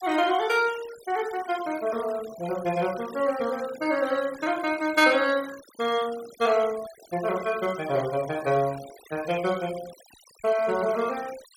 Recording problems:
noise reduction artefacts; signal-to-artefact ratio 17 dB

